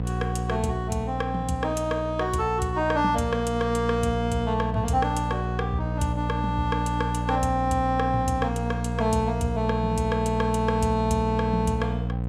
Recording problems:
mains hum; 60 Hz, harmonics up to 780 Hz, SNR 4 dB

